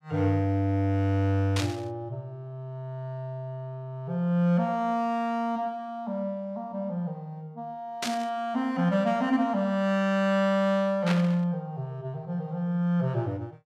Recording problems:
burst of static; at 1.5 s, at 8 s and at 11 s; peak +1 dB vs average level

